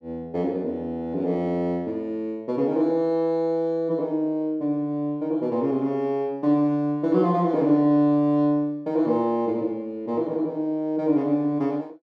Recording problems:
none

